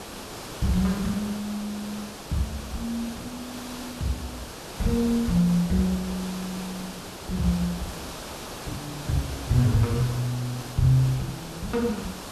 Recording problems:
hiss; SNR 10 dB

